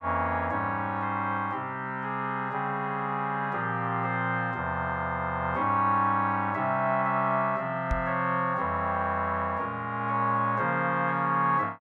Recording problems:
knock on the microphone; at 8 s; peak +1 dB vs average level

